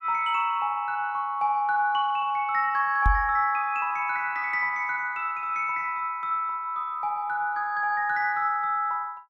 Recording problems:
knock on the microphone; at 3 s; peak +5 dB vs average level

